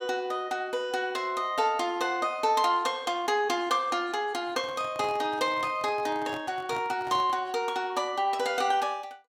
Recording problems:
microphone handling noise; from 4.5 to 7.5 s; peak -8 dB vs average level

